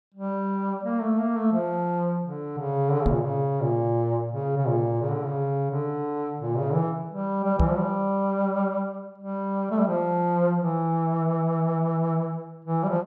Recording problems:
microphone thump; at 3 s and at 7.5 s; peak +6 dB vs average level

